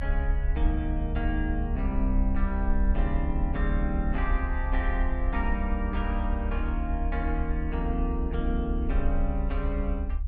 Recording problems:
rumble; below 66 Hz, strongest tone 36 Hz, SNR -2 dB

